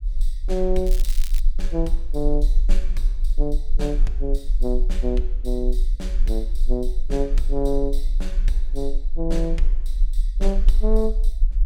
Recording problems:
low-frequency rumble; below 36 Hz, strongest tone 22 Hz, SNR -3 dB
crackling; at 1 s; loose cable, SNR 10 dB

